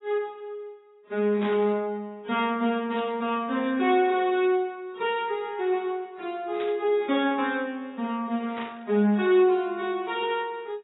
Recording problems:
lossy compression; AAC, log-spectral distance 2 dB, nothing above 3.7 kHz
static burst; 4 times, first at 1.5 s; peak -9 dB vs average level

